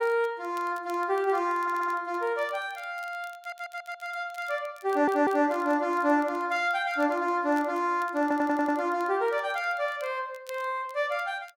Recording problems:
crackle; vinyl, SNR 27 dB
audio stuttering; 4 times, first at 1.5 s

